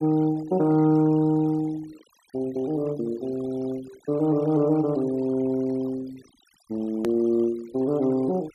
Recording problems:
denoising artefacts; signal-to-artefact ratio 23 dB
edit click; at 7 s

